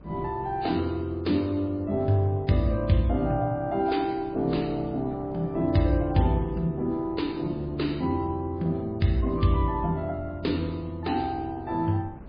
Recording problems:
lossy codec; MP3, log-spectral distance 2 dB, nothing above 4.2 kHz
wind on the microphone; below 320 Hz, SNR 20 dB

